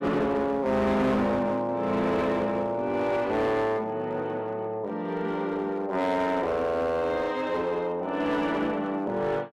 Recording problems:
distortion; hard clipping, uneven, signal-to-distortion ratio 10 dB

